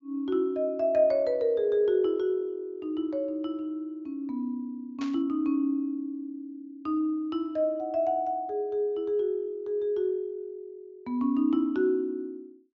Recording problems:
treble cut off; nothing above 7.3 kHz
burst of static; at 5 s; peak -9 dB vs average level

